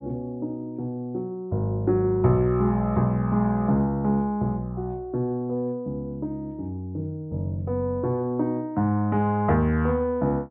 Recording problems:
low-pass filter; nothing above 4 kHz

